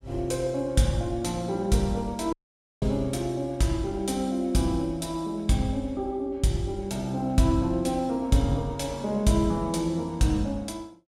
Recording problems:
dropout; at 2.5 s

